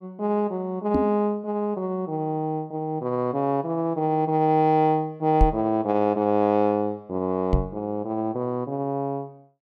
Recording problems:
microphone bump; at 1 s, at 5.5 s and at 7.5 s; peak +6 dB vs average level

